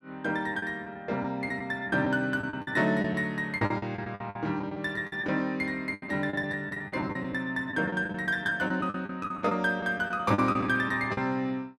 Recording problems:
packet loss; 13% of the sound replaced, filled with the last packet

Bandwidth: 14 kHz